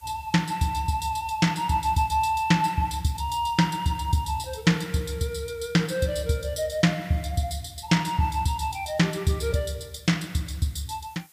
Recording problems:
background hiss; slope +1 dB per octave, SNR 27 dB

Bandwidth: 15 kHz